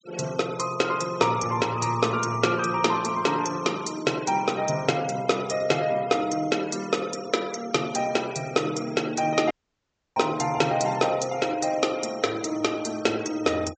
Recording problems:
treble cut off; nothing above 8 kHz
noise reduction artefacts; signal-to-artefact ratio 18 dB
dropout; at 9.5 s for 0.5 s

